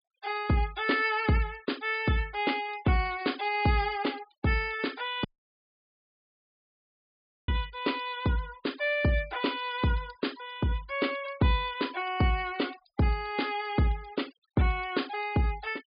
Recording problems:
treble cut off; nothing above 5 kHz
noise reduction artefacts; signal-to-artefact ratio 22 dB
dropout; at 5.5 s for 2 s

